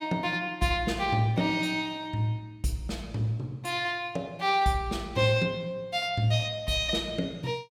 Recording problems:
none

